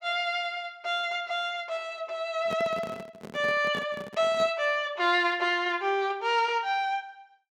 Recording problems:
microphone handling noise; from 2.5 to 4.5 s; peak -6 dB vs average level

